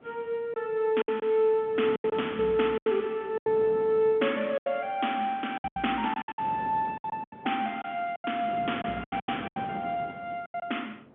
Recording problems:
telephone audio; 150 Hz to 3.5 kHz, G.711
wind noise; below 580 Hz, SNR 17 dB
packet loss; 12% of the sound replaced, filled with silence

